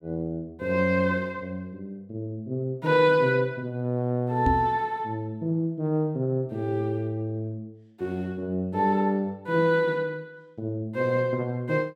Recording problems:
microphone bump; at 4.5 s; peak +4 dB vs average level

